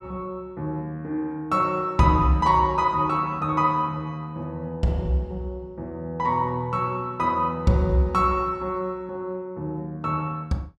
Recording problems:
none

